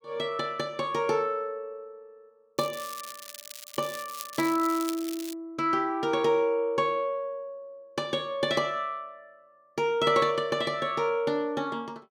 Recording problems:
crackling; from 2.5 to 5.5 s; loose cable, SNR 12 dB

